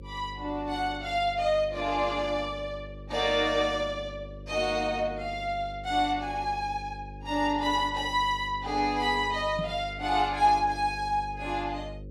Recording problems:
hum; 50 Hz, harmonics up to 550 Hz, SNR 15 dB
knock on the microphone; at 9.5 s; peak -2 dB vs average level

